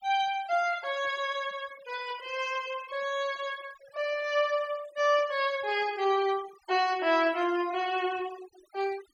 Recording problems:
noise reduction artefacts; signal-to-artefact ratio 18 dB

